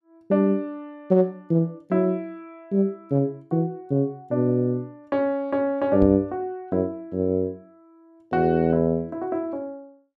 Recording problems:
microphone bump; at 6 s; peak 0 dB vs average level

